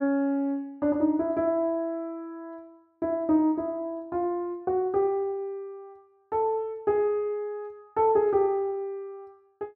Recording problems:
none

